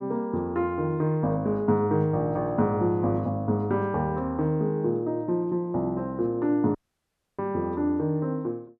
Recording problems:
audio cutting out; at 7 s for 0.5 s

